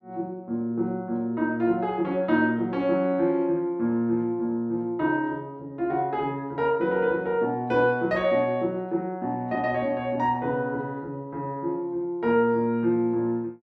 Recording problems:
none

